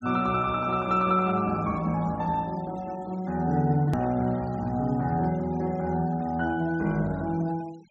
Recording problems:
treble missing; nothing above 8 kHz
denoising artefacts; signal-to-artefact ratio 26 dB
click at an edit; at 4 s

